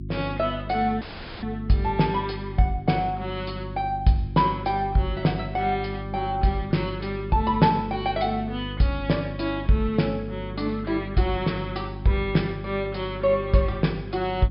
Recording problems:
low-pass filter; nothing above 5.5 kHz
hum; 50 Hz, harmonics up to 350 Hz, SNR 10 dB
audio cutting out; at 1 s

